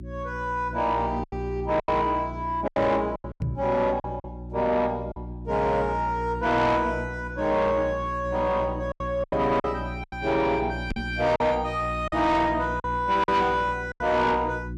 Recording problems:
distorted audio; soft clipping, signal-to-distortion ratio 11 dB
hum; 60 Hz, harmonics up to 360 Hz, SNR 11 dB
packet loss; 7% of the sound replaced, filled with silence
knock on the microphone; at 3.5 s and at 11 s; peak 0 dB vs average level

